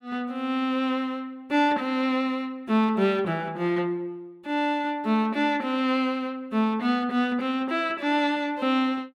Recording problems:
none

